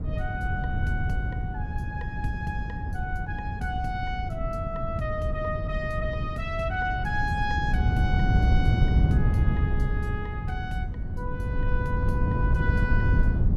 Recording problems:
wind on the microphone; below 130 Hz, SNR -5 dB

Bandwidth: 16 kHz